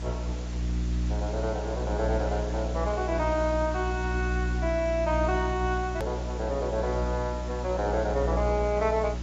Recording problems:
codec artefacts; AAC, log-spectral distance 5 dB
hum; 60 Hz, harmonics up to 360 Hz, SNR 2 dB
hiss; slope -3 dB per octave, SNR 15 dB
hard cut with a click; at 6 s

